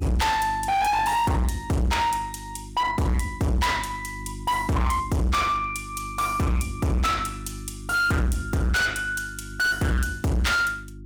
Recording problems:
distortion; hard clipping, uneven, signal-to-distortion ratio 6 dB
hum; 50 Hz, harmonics up to 350 Hz, SNR 15 dB

